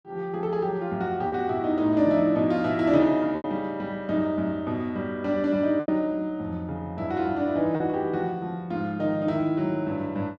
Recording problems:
packet loss; 2% of the sound replaced, filled with repeated pitch periods

